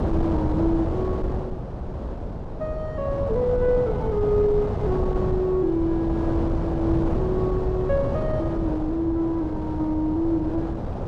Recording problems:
wind noise; below 400 Hz, SNR 3 dB

